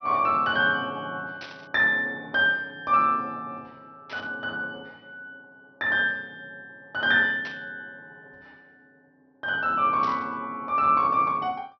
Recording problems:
treble missing; nothing above 5.9 kHz
static burst; 4 times, first at 1.5 s; peak -12 dB vs average level

